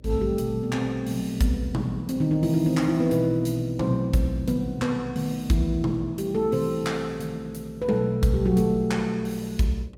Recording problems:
hum; 60 Hz, harmonics up to 600 Hz, SNR 24 dB

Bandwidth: 17 kHz